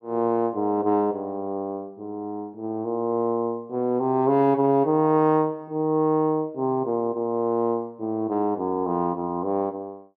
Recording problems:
none

